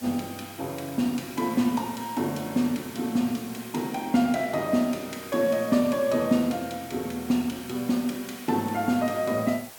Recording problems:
hiss; SNR 16 dB

